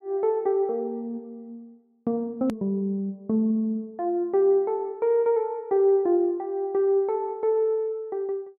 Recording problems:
hard cut with a click; at 2.5 s

